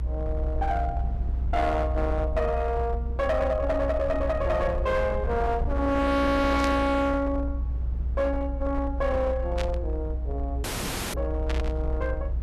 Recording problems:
distortion; hard clipping, signal-to-distortion ratio 11 dB
low-frequency rumble; below 64 Hz, strongest tone 60 Hz, SNR 3 dB
burst of static; at 6.5 s, at 9.5 s and at 11 s; peak -4 dB vs average level
dropout; at 11 s for 0.5 s

